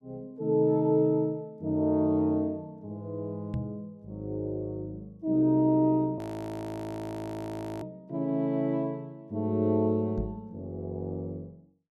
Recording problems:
knock on the microphone; at 3.5 s and at 10 s; peak -1 dB vs average level
audio freezing; at 6 s for 1.5 s

